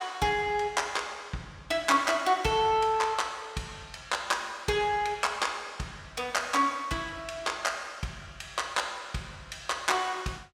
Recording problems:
none

